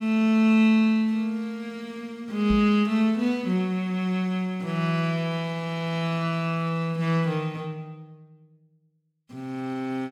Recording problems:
microphone bump; at 2.5 s; peak -2 dB vs average level

